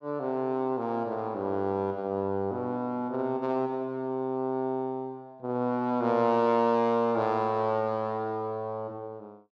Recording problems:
none

